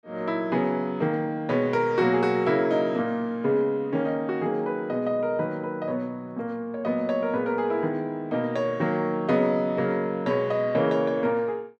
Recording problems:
none

